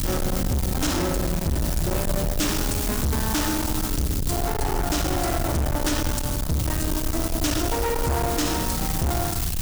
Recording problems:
distortion; soft clipping, signal-to-distortion ratio 6 dB
background hiss; slope 0 dB per octave, SNR 4 dB
rumble; below 430 Hz, SNR 3 dB

